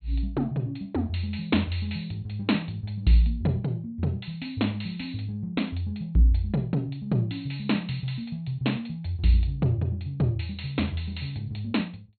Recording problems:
treble missing; nothing above 4.3 kHz

